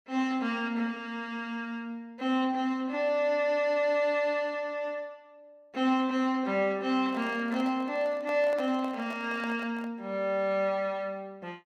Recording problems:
microphone handling noise; from 7 to 10 s; peak -9 dB vs average level

